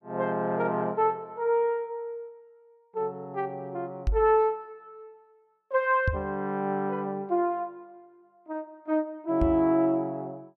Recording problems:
knock on the microphone; at 4 s, at 6 s and at 9.5 s; peak +4 dB vs average level

